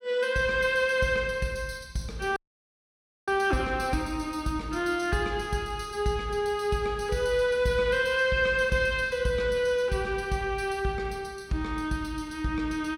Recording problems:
dropout; at 2.5 s for 1 s

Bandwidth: 16.5 kHz